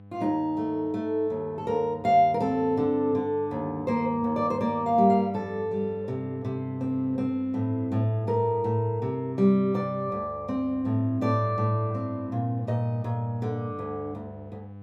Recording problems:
hum; 50 Hz, harmonics up to 1 kHz, SNR 18 dB

